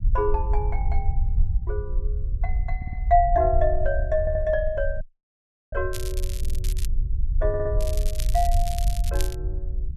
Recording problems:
low-frequency rumble; below 60 Hz, SNR 1 dB
stutter; 4 times, first at 3 s
dropout; at 5 s for 0.5 s
crackling; at 6 s and from 8 to 9.5 s; loose cable, SNR 12 dB

